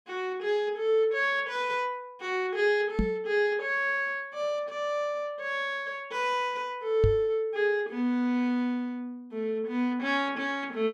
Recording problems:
microphone thump; at 3 s and at 7 s; peak +6 dB vs average level

